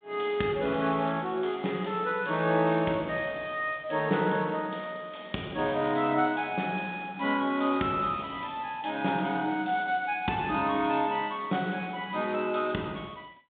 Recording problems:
telephone audio; 130 Hz to 3.7 kHz, G.726

